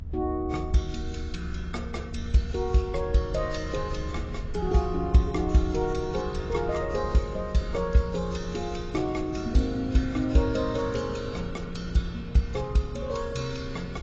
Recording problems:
lossy compression; AAC, log-spectral distance 3 dB, nothing above 7.3 kHz
rumble; below 76 Hz, SNR 10 dB
wind noise; below 220 Hz, SNR 17 dB

